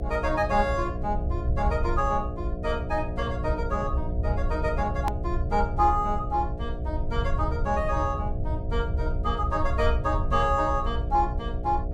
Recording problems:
hum; 60 Hz, harmonics up to 720 Hz, SNR 8 dB
rumble; below 84 Hz, SNR 3 dB
hard cut with a click; at 5 s

